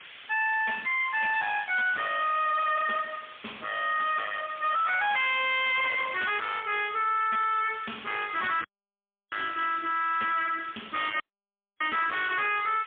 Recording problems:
telephone audio; 260 Hz to 3.6 kHz, AMR-NB, then MP3
distortion; soft clipping, signal-to-distortion ratio 6 dB
background hiss; SNR 18 dB
audio cutting out; at 8.5 s for 0.5 s and at 11 s for 0.5 s

